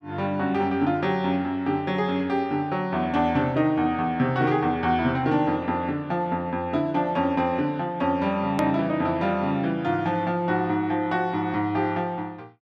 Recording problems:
click at an edit; at 8.5 s

